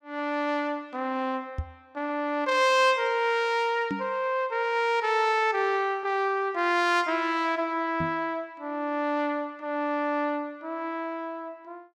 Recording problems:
knock on the microphone; at 1.5 s, at 4 s and at 8 s; peak -1 dB vs average level

